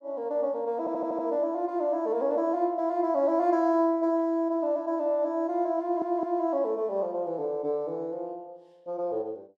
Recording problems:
stutter; at 1 s and at 6 s

